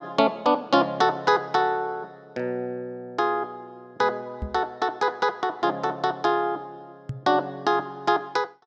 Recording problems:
microphone bump; at 4.5 s and at 7 s; peak -3 dB vs average level

